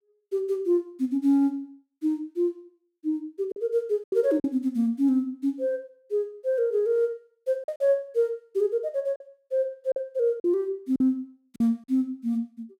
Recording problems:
packet loss; 4% of the sound replaced, filled with silence

